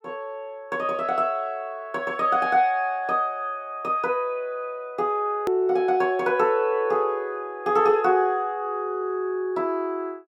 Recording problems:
edit click; at 5.5 s

